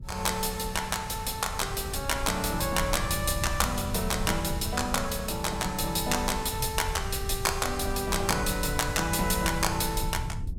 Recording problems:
wind on the microphone; below 110 Hz, SNR 8 dB

